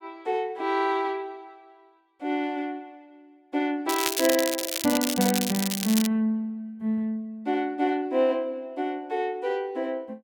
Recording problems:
crackling; from 4 to 6 s; loose cable, SNR 2 dB

